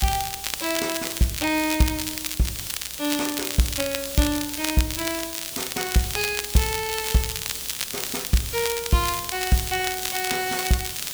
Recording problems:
background hiss; SNR 5 dB
crackle; vinyl, SNR 4 dB

